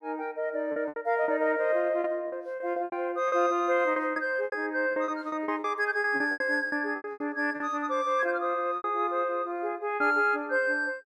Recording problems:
packet loss; 12% of the sound replaced, filled with repeated pitch periods

